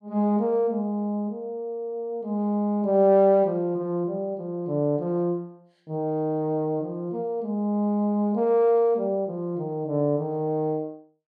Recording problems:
none

